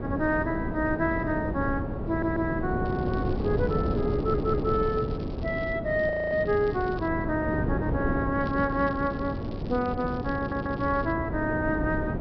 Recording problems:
low-pass filter; nothing above 5.5 kHz
wind noise; below 370 Hz, SNR 3 dB
audio stuttering; at 2 s, at 4 s and at 10 s
crackling; from 3 to 6 s, from 6 to 7 s and from 8.5 to 11 s; loose cable, SNR 25 dB
frozen audio; at 6 s

